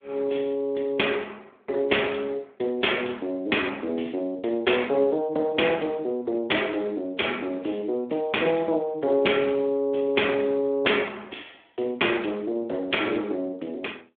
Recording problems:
telephone audio; 260 Hz to 3.5 kHz, Speex

